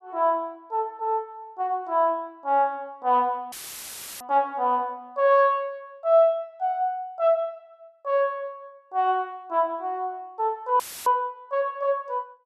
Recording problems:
dropout; at 3.5 s for 0.5 s and at 11 s; filled with static

